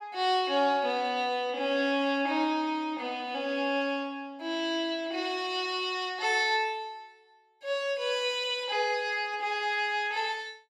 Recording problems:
none

